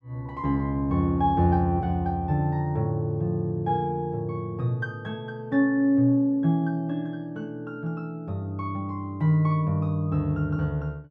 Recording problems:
none

